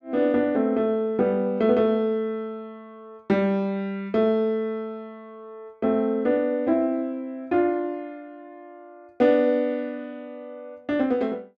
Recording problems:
none

